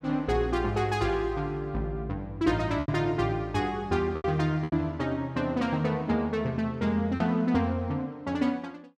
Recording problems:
packet loss; 3% of the sound replaced, filled with repeated pitch periods

